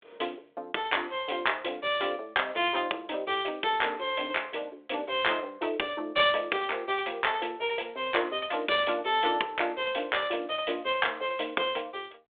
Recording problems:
telephone audio; 320 Hz to 3.6 kHz, G.726

